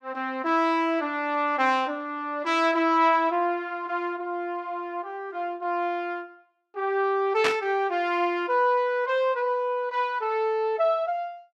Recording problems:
burst of static; at 7.5 s; peak +3 dB vs average level

